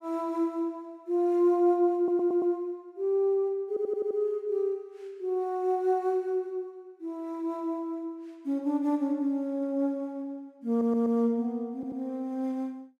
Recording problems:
audio stuttering; 4 times, first at 2 s

